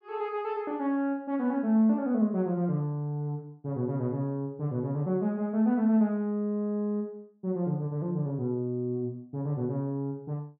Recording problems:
none

